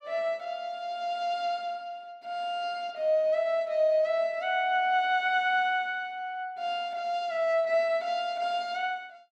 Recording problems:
none

